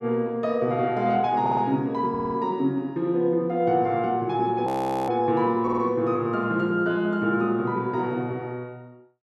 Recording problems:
audio stuttering; at 1.5 s, at 2 s and at 5.5 s
audio freezing; at 4.5 s

